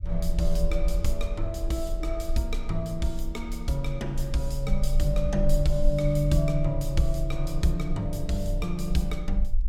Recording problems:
rumble; below 42 Hz, strongest tone 22 Hz, SNR 3 dB

